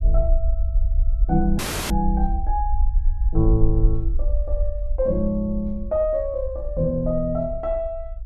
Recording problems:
low-frequency rumble; below 54 Hz, SNR 1 dB
audio cutting out; at 1.5 s

